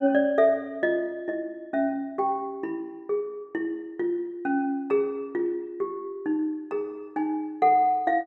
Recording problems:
none

